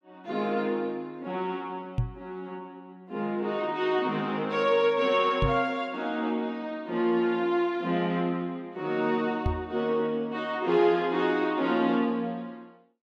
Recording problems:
microphone thump; at 2 s, at 5.5 s and at 9.5 s; peak +4 dB vs average level

